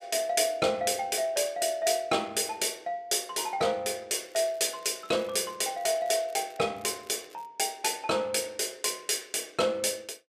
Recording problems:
crackle; from 4 to 6.5 s and at 7 s; loose cable, SNR 27 dB

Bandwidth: 14.5 kHz